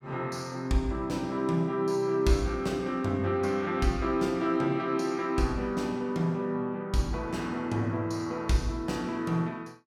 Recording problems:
none

